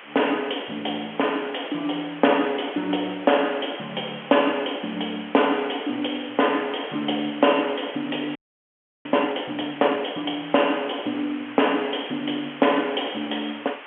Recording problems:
phone line; 280 Hz to 3.3 kHz, G.711
background hiss; SNR 16 dB
audio freezing; at 8.5 s for 0.5 s

